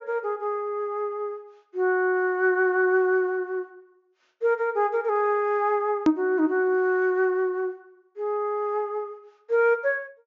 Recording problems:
treble cut off; nothing above 7.1 kHz
edit click; at 6 s

